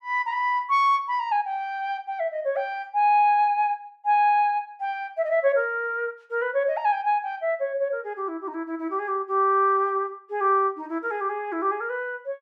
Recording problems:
none

